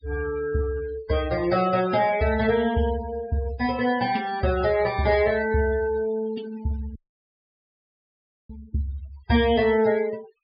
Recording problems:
treble cut off; nothing above 5.5 kHz
denoising artefacts; signal-to-artefact ratio 17 dB
audio cutting out; at 7 s for 1.5 s

